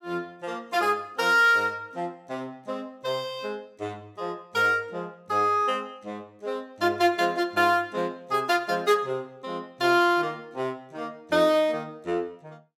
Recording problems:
none

